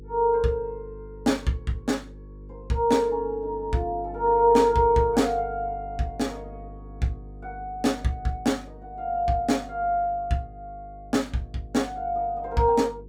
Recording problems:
hum; 50 Hz, harmonics up to 500 Hz, SNR 18 dB

